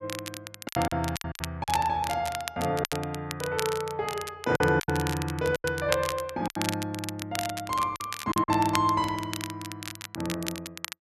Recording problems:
crackling; vinyl, SNR 8 dB
packet loss; 8% of the sound replaced, filled with silence

